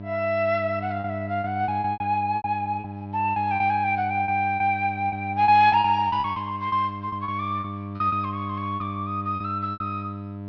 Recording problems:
low-pass filter; nothing above 5.8 kHz
electrical hum; 50 Hz, harmonics up to 1 kHz, SNR 10 dB
packet loss; 12% of the sound replaced, filled with repeated pitch periods

